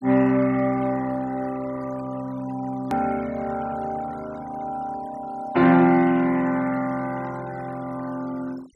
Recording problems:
denoising artefacts; signal-to-artefact ratio 21 dB
edit click; at 3 s

